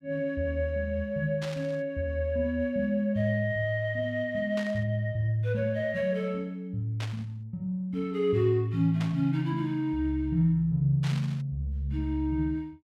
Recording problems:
burst of static; 5 times, first at 1.5 s; peak -7 dB vs average level

